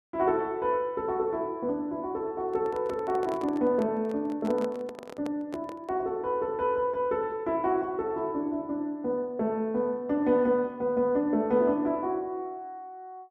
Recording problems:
microphone handling noise; from 2.5 to 6 s; peak -6 dB vs average level

